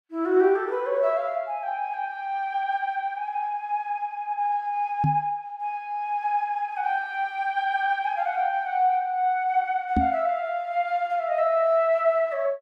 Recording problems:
microphone bump; at 5 s and at 10 s; peak +5 dB vs average level

